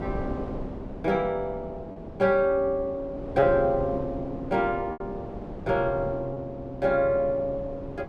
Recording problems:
wind on the microphone; below 480 Hz, SNR 12 dB
lost packets; 2% of the sound replaced, filled with repeated pitch periods

